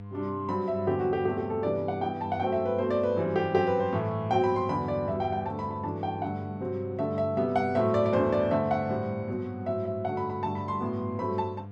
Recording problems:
electrical hum; 50 Hz, harmonics up to 900 Hz, SNR 13 dB

